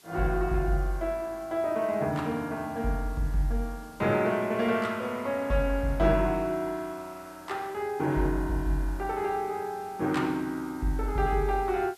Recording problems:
background hiss; slope -1 dB per octave, SNR 25 dB

